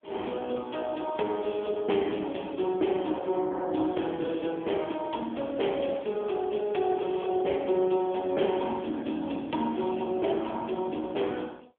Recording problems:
telephone audio; 240 Hz to 3.3 kHz, AMR-NB

